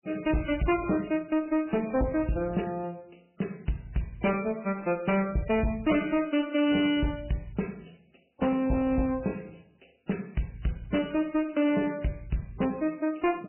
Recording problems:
lossy codec; MP3, log-spectral distance 6 dB, nothing above 2.5 kHz
distortion; hard clipping, uneven, signal-to-distortion ratio 9 dB

